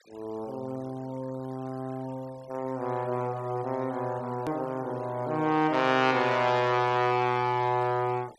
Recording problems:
denoising artefacts; signal-to-artefact ratio 24 dB
hard cut with a click; at 4.5 s

